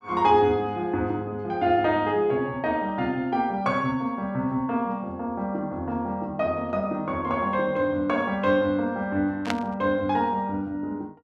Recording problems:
static burst; at 9.5 s; peak +1 dB vs average level

